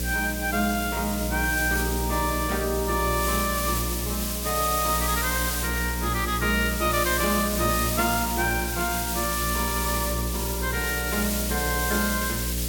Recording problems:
hum; 60 Hz, harmonics up to 600 Hz, SNR 5 dB
hiss; slope +2 dB per octave, SNR 2 dB

